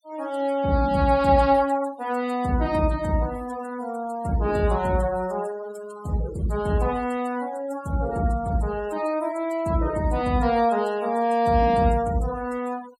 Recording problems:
denoising artefacts; signal-to-artefact ratio 20 dB

